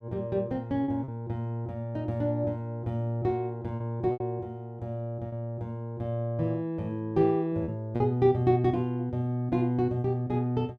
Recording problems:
packet loss; 3% of the sound replaced, filled with repeated pitch periods

